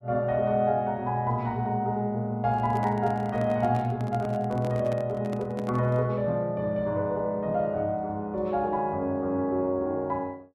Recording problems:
microphone handling noise; from 2.5 to 6 s; peak -7 dB vs average level

